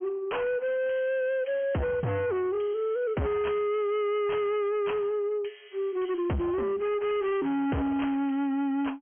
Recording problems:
treble cut off; nothing above 3.2 kHz
distortion; hard clipping, signal-to-distortion ratio 6 dB

